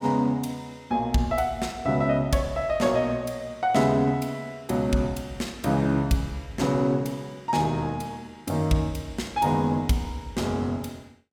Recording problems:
none

